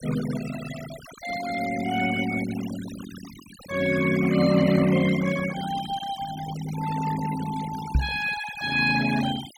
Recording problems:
denoising artefacts; signal-to-artefact ratio 13 dB
microphone bump; at 8 s; peak +6 dB vs average level

